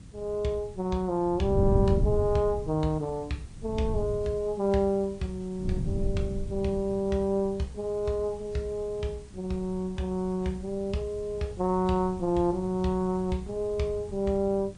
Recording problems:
lossy compression; MP3, log-spectral distance 2 dB, nothing above 9.2 kHz
background hiss; SNR 28 dB
wind noise; below 130 Hz, SNR 7 dB

